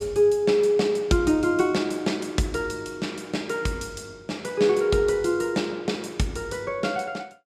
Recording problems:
none

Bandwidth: 15.5 kHz